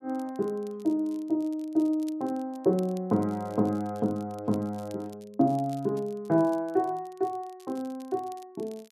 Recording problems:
crackle; vinyl, SNR 27 dB

